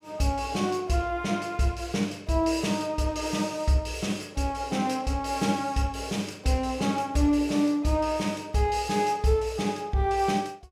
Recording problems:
none

